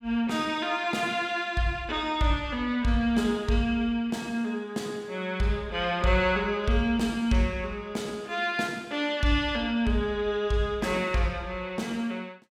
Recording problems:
none

